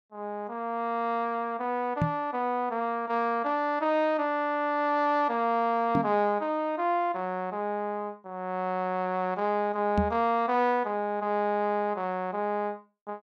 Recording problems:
microphone thump; at 2 s, at 6 s and at 10 s; peak +4 dB vs average level

